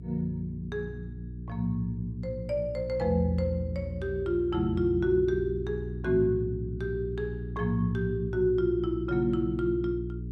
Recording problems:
hum; 60 Hz, harmonics up to 420 Hz, SNR 8 dB

